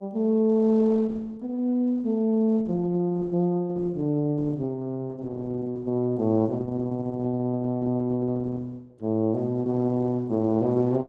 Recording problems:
lossy compression; Opus, log-spectral distance 2 dB

